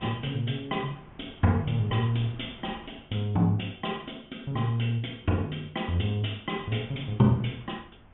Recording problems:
treble missing; nothing above 3.5 kHz
wind on the microphone; below 600 Hz, SNR 23 dB

